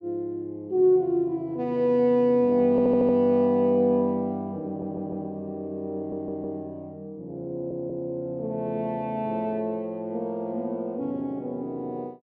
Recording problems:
stutter; 4 times, first at 2.5 s

